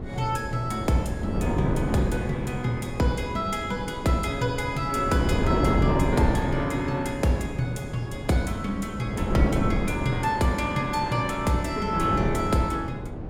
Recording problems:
wind on the microphone; below 370 Hz, SNR 3 dB

